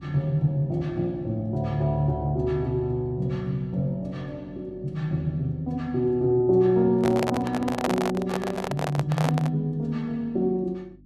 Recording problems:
hum; 50 Hz, harmonics up to 300 Hz, SNR 25 dB
microphone handling noise; from 7 to 9.5 s; peak +3 dB vs average level

